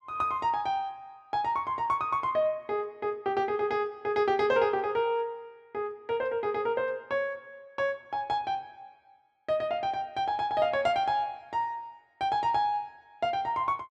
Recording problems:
none

